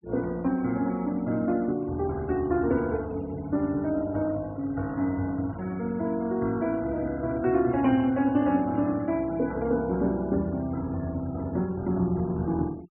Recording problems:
treble cut off; nothing above 3 kHz
denoising artefacts; signal-to-artefact ratio 25 dB

